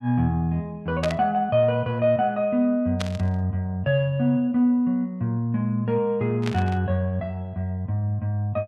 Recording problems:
static burst; at 1 s, at 3 s and at 6.5 s; peak -3 dB vs average level

